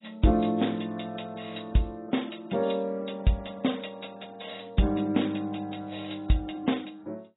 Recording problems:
codec artefacts; AAC, log-spectral distance 7 dB, nothing above 3.8 kHz

